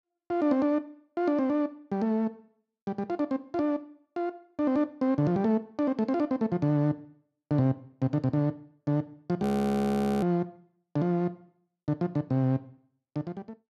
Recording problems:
frozen audio; at 9.5 s for 1 s

